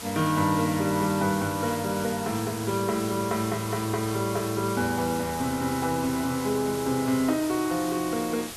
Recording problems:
hiss; slope 0 dB per octave, SNR 10 dB

